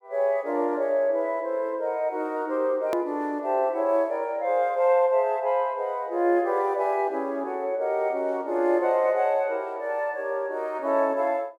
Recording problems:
edit click; at 3 s

